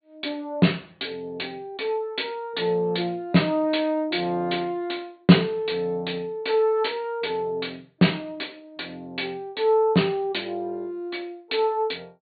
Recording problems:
treble cut off; nothing above 4.5 kHz

